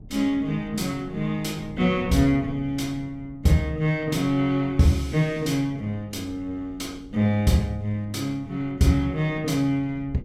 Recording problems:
wind on the microphone; below 190 Hz, SNR 19 dB

